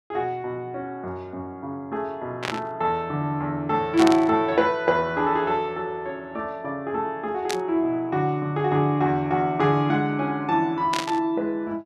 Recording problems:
static burst; 4 times, first at 2.5 s; peak +1 dB vs average level

